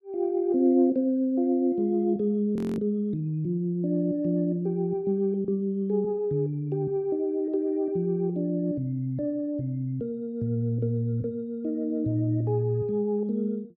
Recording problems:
frozen audio; at 2.5 s

